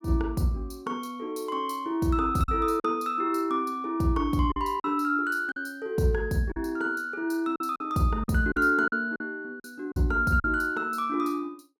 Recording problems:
lost packets; 5% of the sound replaced, filled with silence

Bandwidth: 18.5 kHz